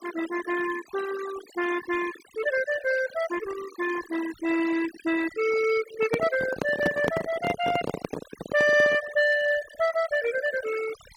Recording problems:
noise reduction artefacts; signal-to-artefact ratio 13 dB
handling noise; from 6 to 9 s; peak +3 dB vs average level

